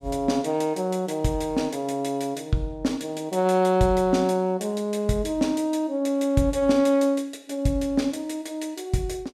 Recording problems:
none

